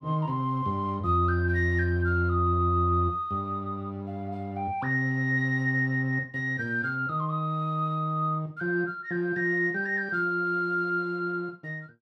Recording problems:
none

